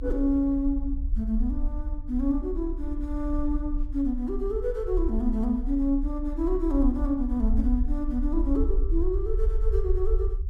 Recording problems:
low-frequency rumble; below 50 Hz, strongest tone 32 Hz, SNR 3 dB

